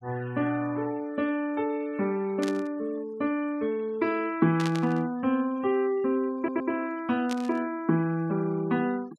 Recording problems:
denoising artefacts; signal-to-artefact ratio 25 dB
static burst; at 2.5 s, at 4.5 s and at 7.5 s; peak -4 dB vs average level
audio stuttering; at 6.5 s

